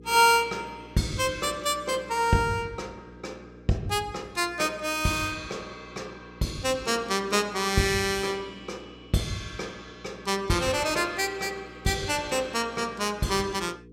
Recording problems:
hum; 60 Hz, harmonics up to 480 Hz, SNR 22 dB

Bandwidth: 16.5 kHz